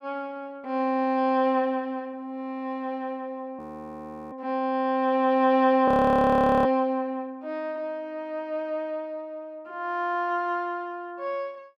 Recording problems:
audio freezing; at 3.5 s for 0.5 s and at 6 s for 1 s

